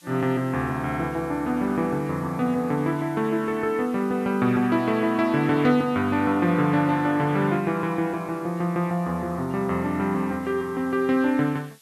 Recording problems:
hiss; slope +2 dB per octave, SNR 28 dB

